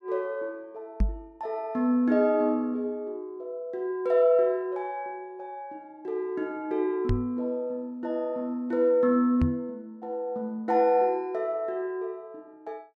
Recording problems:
microphone bump; at 1 s, at 7 s and at 9.5 s; peak +4 dB vs average level

